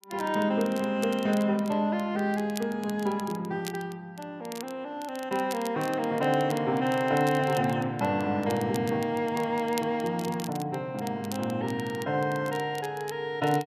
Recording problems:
crackling; vinyl, SNR 18 dB

